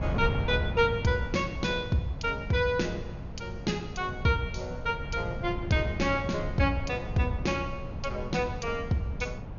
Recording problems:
low-pass filter; nothing above 6.8 kHz
wind noise; below 170 Hz, SNR 7 dB

